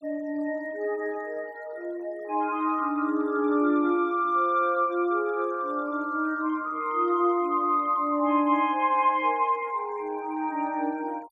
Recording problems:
noise reduction artefacts; signal-to-artefact ratio 28 dB

